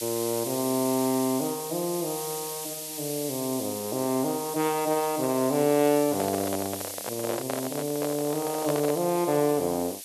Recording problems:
background hiss; SNR 7 dB
microphone handling noise; from 6 to 9 s; peak 0 dB vs average level

